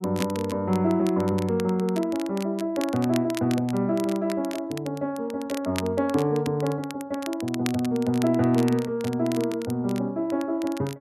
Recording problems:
crackling; vinyl, SNR 16 dB

